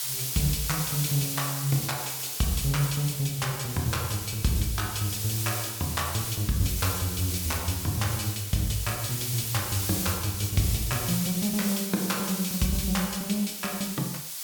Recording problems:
hiss; slope +4 dB per octave, SNR 2 dB

